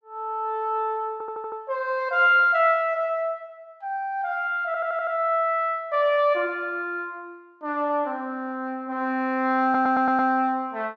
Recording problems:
audio stuttering; at 1 s, at 4.5 s and at 9.5 s

